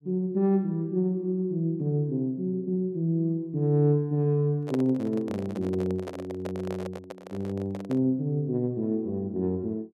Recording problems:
microphone handling noise; from 4.5 to 8 s; peak -4 dB vs average level

